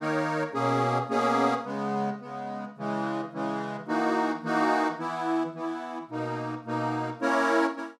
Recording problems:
none

